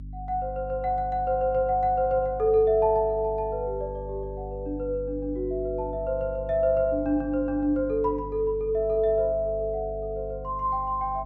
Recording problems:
hum; 50 Hz, harmonics up to 300 Hz, SNR 14 dB

